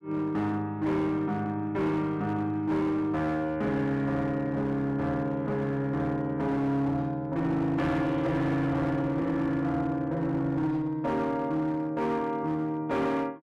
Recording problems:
distortion; hard clipping, signal-to-distortion ratio 11 dB

